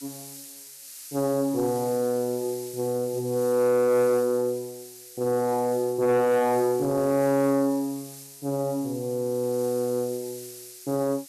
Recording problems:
distorted audio; soft clipping, signal-to-distortion ratio 11 dB
background hiss; slope +5 dB per octave, SNR 16 dB

